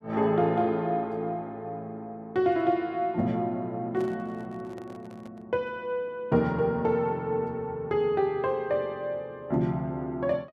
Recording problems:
microphone handling noise; from 4 to 5.5 s; peak -10 dB vs average level

